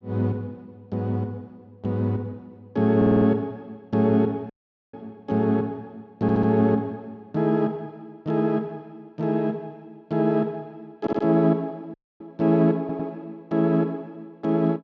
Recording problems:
audio stuttering; 4 times, first at 3 s
audio cutting out; at 4.5 s and at 12 s

